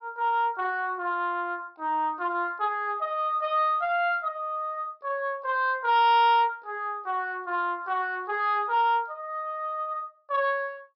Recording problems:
low-pass filter; nothing above 5.4 kHz
distortion; soft clipping, signal-to-distortion ratio 12 dB

